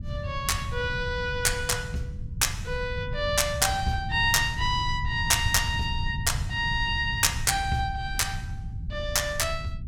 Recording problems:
low-frequency rumble; below 120 Hz, SNR 8 dB

